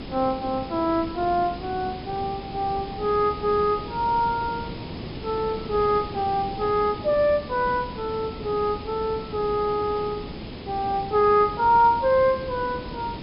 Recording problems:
low-pass filter; nothing above 5.5 kHz
background hiss; SNR 12 dB

